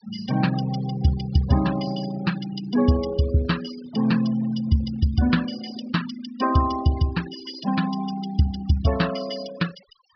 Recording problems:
low-pass filter; nothing above 5.5 kHz
denoising artefacts; signal-to-artefact ratio 15 dB

